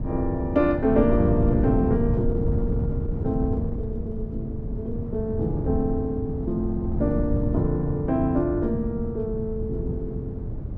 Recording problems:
wind on the microphone; below 160 Hz, SNR 3 dB

